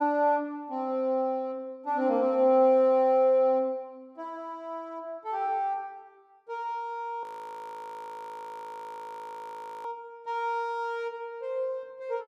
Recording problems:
frozen audio; at 7 s for 2.5 s

